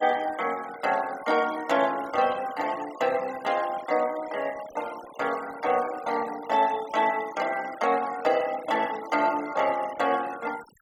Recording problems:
denoising artefacts; signal-to-artefact ratio 17 dB

